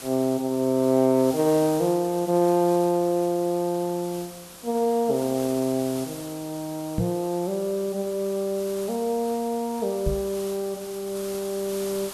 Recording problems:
hiss; slope -1 dB per octave, SNR 15 dB
knock on the microphone; at 7 s and at 10 s; peak +2 dB vs average level

